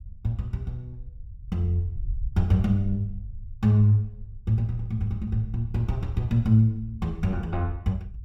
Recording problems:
rumble; below 70 Hz, SNR 14 dB

